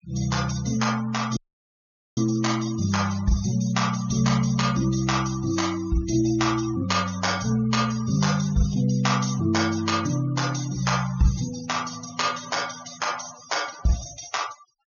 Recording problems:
treble cut off; nothing above 6.9 kHz
noise reduction artefacts; signal-to-artefact ratio 16 dB
audio cutting out; at 1.5 s for 1 s

